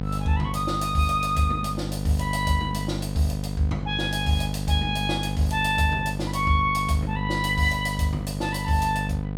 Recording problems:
mains hum; 50 Hz, harmonics up to 1 kHz, SNR 5 dB

